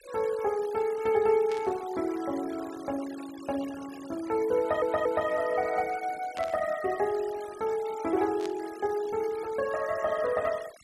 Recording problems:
denoising artefacts; signal-to-artefact ratio 19 dB
burst of static; at 1.5 s, at 6.5 s and at 8.5 s; peak -8 dB vs average level
stutter; at 4.5 s

